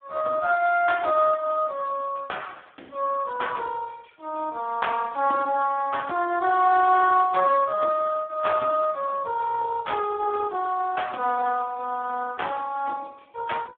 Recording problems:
telephone audio; 240 Hz to 3.5 kHz, Speex

